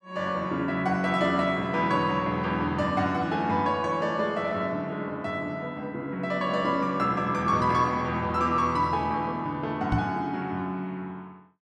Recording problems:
microphone bump; at 10 s; peak +4 dB vs average level

